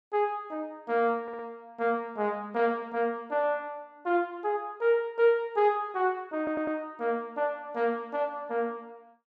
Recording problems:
stutter; at 1 s and at 6.5 s

